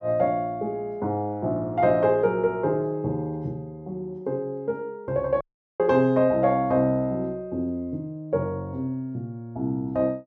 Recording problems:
audio cutting out; at 5.5 s

